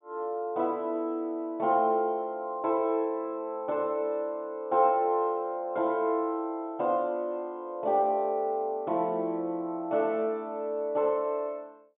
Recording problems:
treble missing; nothing above 3.7 kHz

